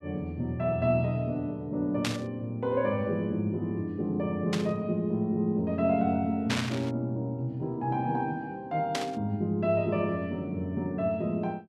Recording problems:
static burst; 4 times, first at 2 s; peak +3 dB vs average level

